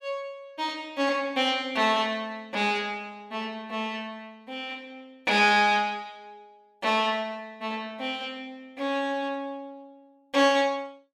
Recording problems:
none

